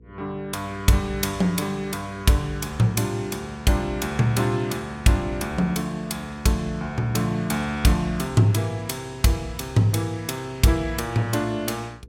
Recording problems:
hum; 60 Hz, harmonics up to 480 Hz, SNR 25 dB

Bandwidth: 16.5 kHz